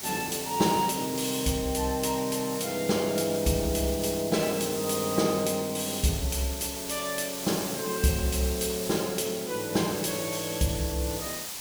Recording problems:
hiss; slope +1 dB per octave, SNR 7 dB
crackling; from 6 to 9.5 s; loose cable, SNR 29 dB

